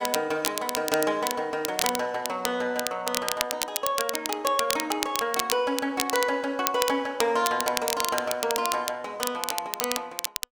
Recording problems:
crackle; vinyl, SNR 3 dB

